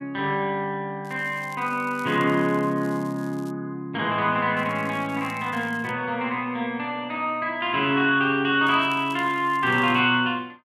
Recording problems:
crackling; from 1 to 3.5 s, from 4.5 to 6 s and from 8.5 to 10 s; loose cable, SNR 27 dB

